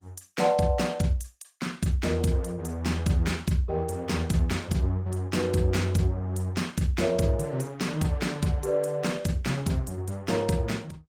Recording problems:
lossy codec; Opus, log-spectral distance 3 dB, nothing above 19 kHz

